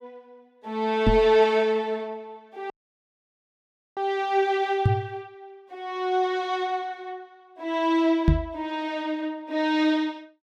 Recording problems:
microphone thump; at 1 s, at 5 s and at 8.5 s; peak +8 dB vs average level
audio cutting out; at 2.5 s for 1.5 s

